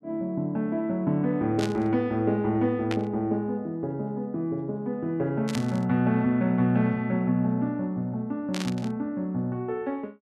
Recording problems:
burst of static; 4 times, first at 1.5 s; peak -3 dB vs average level

